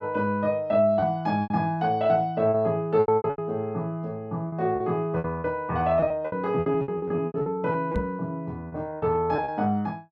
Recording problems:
lost packets; 12% of the sound replaced, filled with repeated pitch periods
microphone bump; at 8 s; peak 0 dB vs average level

